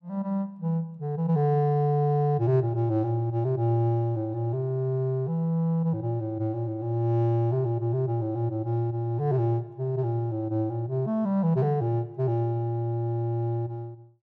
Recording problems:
none

